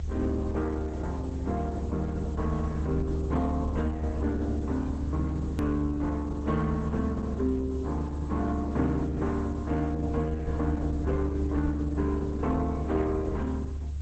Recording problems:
lossy codec; Opus, log-spectral distance 2 dB, nothing above 13.1 kHz
hum; 50 Hz, harmonics up to 500 Hz, SNR 15 dB
hiss; slope 0 dB per octave, SNR 28 dB
rumble; below 74 Hz, strongest tone 72 Hz, SNR 2 dB
click at an edit; at 5.5 s

